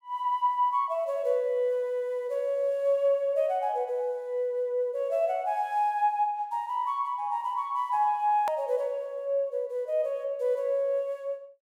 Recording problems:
click at an edit; at 8.5 s

